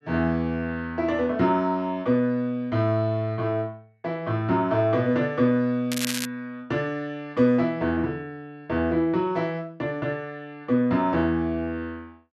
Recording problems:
crackle; at 6 s; loose cable, SNR 6 dB

